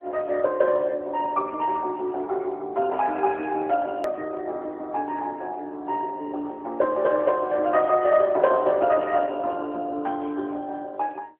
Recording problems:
telephone audio; 260 Hz to 3.1 kHz, AMR-NB
edit click; at 4 s

